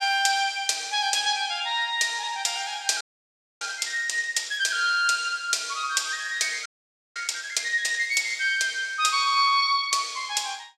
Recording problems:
frozen audio; at 3 s for 0.5 s and at 6.5 s for 0.5 s

